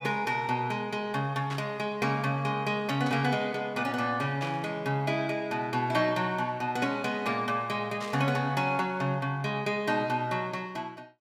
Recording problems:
burst of static; 4 times, first at 1.5 s; peak -7 dB vs average level

